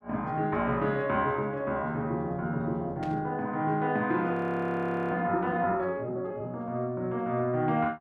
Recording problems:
burst of static; at 3 s; peak -11 dB vs average level
frozen audio; at 4.5 s for 1 s

